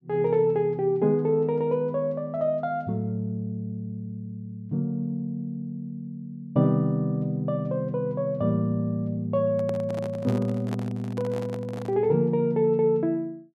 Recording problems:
microphone handling noise; from 9.5 to 12 s; peak -7 dB vs average level

